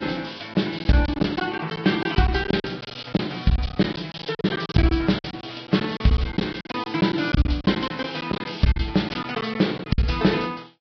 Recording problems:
lossy compression; Vorbis, log-spectral distance 8 dB, nothing above 5.2 kHz
packet loss; 14% of the sound replaced, filled with silence

